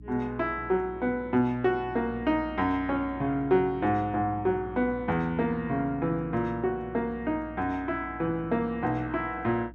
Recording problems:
electrical hum; 60 Hz, harmonics up to 300 Hz, SNR 18 dB

